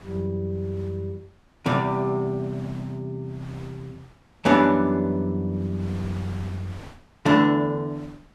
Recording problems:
wind noise; below 1.2 kHz, SNR 22 dB

